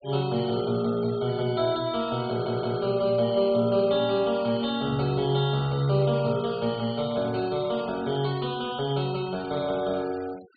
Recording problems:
treble missing; nothing above 4.7 kHz
noise reduction artefacts; signal-to-artefact ratio 22 dB
audio stuttering; at 2.5 s

